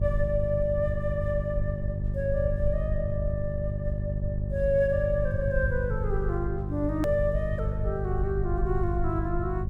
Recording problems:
electrical hum; 50 Hz, harmonics up to 550 Hz, SNR 3 dB
rumble; below 80 Hz, SNR 5 dB
hard cut with a click; at 7 s

